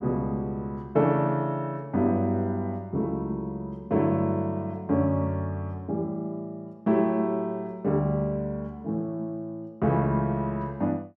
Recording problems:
none

